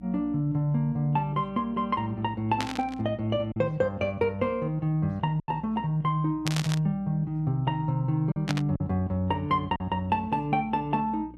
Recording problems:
mains hum; 60 Hz, harmonics up to 300 Hz, SNR 22 dB
packet loss; 2% of the sound replaced, filled with silence
static burst; at 2.5 s, at 6.5 s and at 8.5 s; peak +1 dB vs average level

